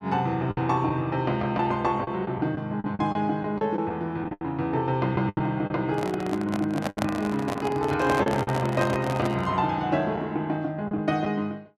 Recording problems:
lost packets; 7% of the sound replaced, filled with the last packet
microphone handling noise; from 6 to 9.5 s; peak +3 dB vs average level

